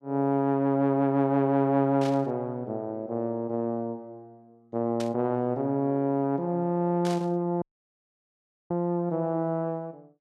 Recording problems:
static burst; at 2 s, at 5 s and at 7 s; peak -8 dB vs average level
audio cutting out; at 7.5 s for 1 s

